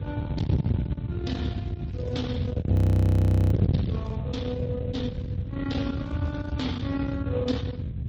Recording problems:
codec artefacts; Speex, then MP3, log-spectral distance 2 dB
distorted audio; soft clipping, signal-to-distortion ratio 7 dB
wind noise; below 180 Hz, SNR -4 dB
crackle; from 2 to 4 s and from 6 to 7 s; loose cable, SNR 28 dB
audio freezing; at 2.5 s for 1 s

